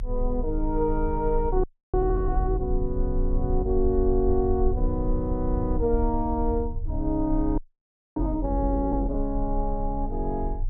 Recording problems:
low-frequency rumble; below 52 Hz, strongest tone 28 Hz, SNR 3 dB
audio freezing; at 1.5 s and at 7.5 s for 0.5 s

